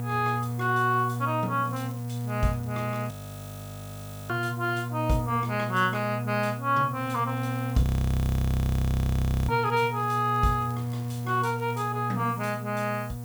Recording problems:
hum; 60 Hz, harmonics up to 960 Hz, SNR 6 dB
background hiss; SNR 20 dB
crackle; from 1.5 to 3 s, at 7.5 s and from 9.5 to 12 s; loose cable, SNR 28 dB
audio freezing; at 3 s for 1 s and at 8 s for 1.5 s

